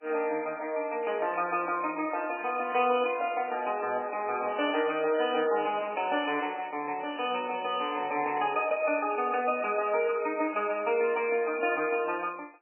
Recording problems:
lossy codec; MP3, log-spectral distance 5 dB, nothing above 2.5 kHz

